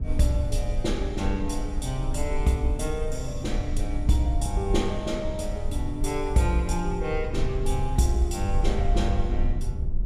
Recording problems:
low-frequency rumble; below 66 Hz, SNR 2 dB

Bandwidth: 15.5 kHz